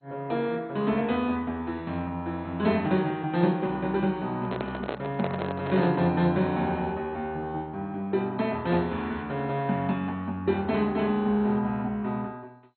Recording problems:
codec artefacts; MP2, then MP2, log-spectral distance 2 dB, nothing above 4.2 kHz
handling noise; from 4.5 to 6 s; peak -1 dB vs average level

